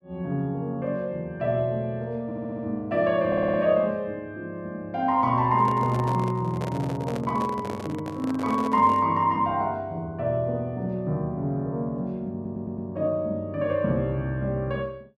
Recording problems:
stutter; at 2.5 s, at 3.5 s and at 12 s
microphone handling noise; from 5.5 to 9 s; peak -4 dB vs average level

